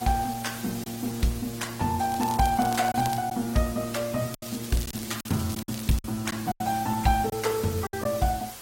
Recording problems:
codec artefacts; Opus, log-spectral distance 7 dB, nothing above 16 kHz
background hiss; slope -1 dB per octave, SNR 13 dB
packet loss; 6% of the sound replaced, filled with silence
crackling; from 2 to 3 s and from 4.5 to 6 s; loose cable, SNR 13 dB

